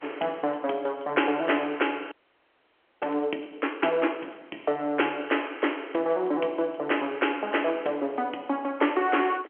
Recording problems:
telephone audio; 260 Hz to 3.3 kHz, G.711
frozen audio; at 2 s for 1 s

